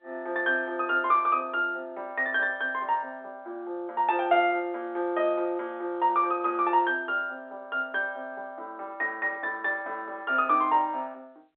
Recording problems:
phone line; 280 Hz to 3.5 kHz, G.711

